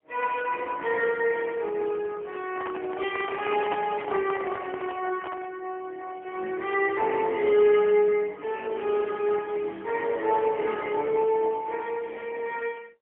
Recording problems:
telephone audio; 300 Hz to 3.3 kHz, AMR-NB, then MP3
microphone handling noise; from 2.5 to 5.5 s; peak -1 dB vs average level
crackling; from 6 to 8 s and from 8.5 to 11 s; loose cable, SNR 30 dB

